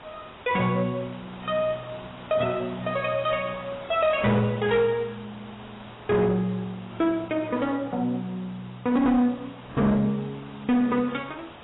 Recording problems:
lossy compression; AAC, log-spectral distance 7 dB, nothing above 3.8 kHz
distortion; hard clipping, uneven, signal-to-distortion ratio 11 dB
hiss; SNR 18 dB

